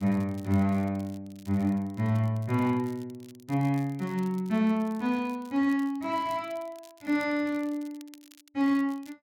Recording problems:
crackle; vinyl, SNR 27 dB

